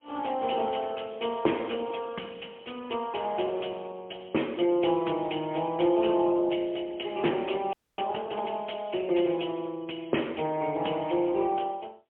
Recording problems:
phone line; 260 Hz to 3.3 kHz, AMR-NB, then MP3
audio freezing; at 7.5 s

